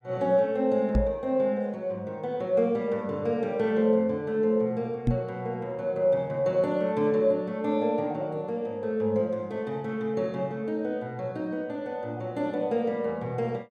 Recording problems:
microphone thump; at 1 s and at 5 s; peak +6 dB vs average level

